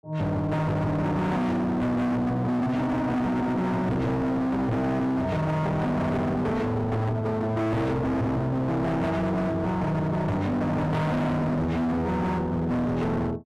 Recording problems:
distorted audio; hard clipping, uneven, signal-to-distortion ratio 5 dB

